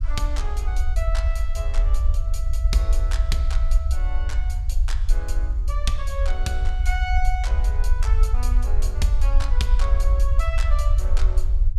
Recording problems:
low-frequency rumble; below 54 Hz, SNR -9 dB

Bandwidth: 14.5 kHz